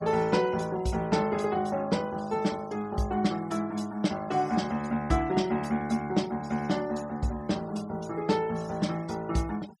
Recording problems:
denoising artefacts; signal-to-artefact ratio 20 dB

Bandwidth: 14.5 kHz